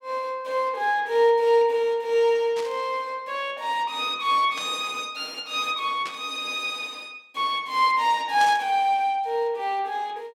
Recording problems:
burst of static; 4 times, first at 2.5 s; peak -7 dB vs average level

